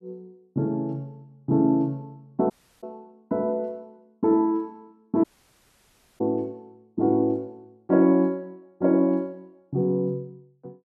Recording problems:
audio cutting out; at 2.5 s and at 5 s for 1 s

